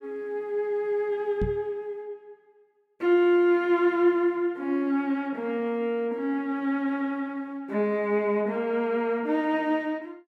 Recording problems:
microphone thump; at 1.5 s; peak 0 dB vs average level

